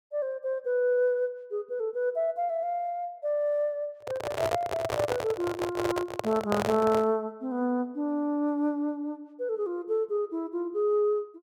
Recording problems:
microphone handling noise; from 4 to 7 s; peak +3 dB vs average level

